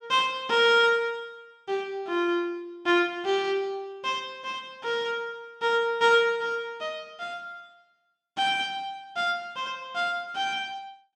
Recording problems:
none

